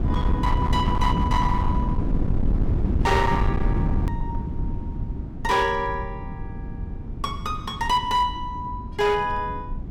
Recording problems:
distorted audio; hard clipping, uneven, signal-to-distortion ratio 10 dB
low-frequency rumble; below 170 Hz, SNR 2 dB
edit click; at 4 s

